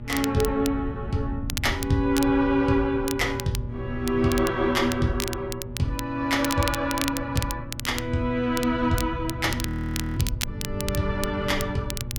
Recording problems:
hum; 60 Hz, harmonics up to 840 Hz, SNR 13 dB
wind noise; below 120 Hz, SNR 10 dB
crackle; vinyl, SNR 9 dB
audio freezing; at 9.5 s for 0.5 s

